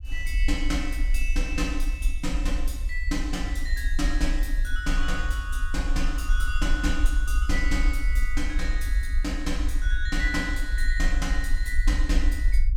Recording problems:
rumble; below 48 Hz, SNR -3 dB

